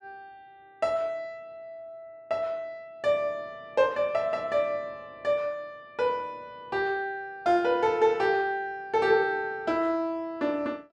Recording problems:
none

